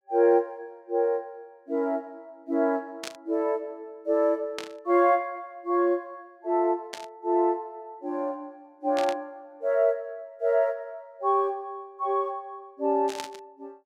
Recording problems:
static burst; 5 times, first at 3 s; peak -4 dB vs average level

